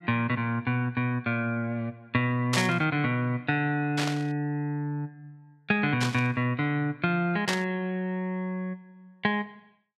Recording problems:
static burst; 4 times, first at 2.5 s; peak +4 dB vs average level

